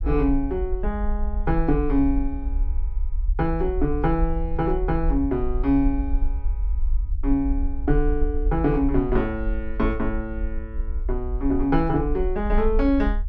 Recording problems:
rumble; below 52 Hz, SNR 4 dB

